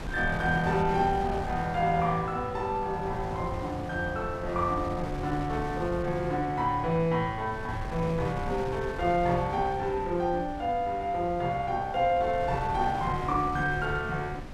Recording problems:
wind noise; below 340 Hz, SNR 10 dB

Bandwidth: 14 kHz